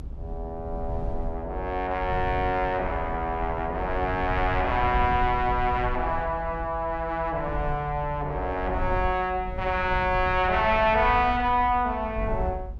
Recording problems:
low-frequency rumble; below 90 Hz, SNR 9 dB

